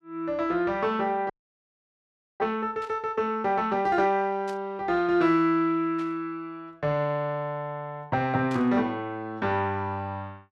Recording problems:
audio freezing; at 1.5 s for 1 s
burst of static; 4 times, first at 3 s; peak -13 dB vs average level

